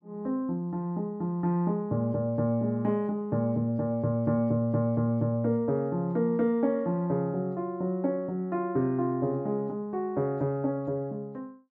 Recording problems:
none

